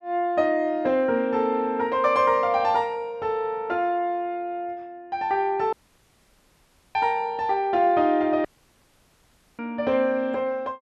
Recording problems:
audio cutting out; at 5.5 s for 1 s and at 8.5 s for 1 s

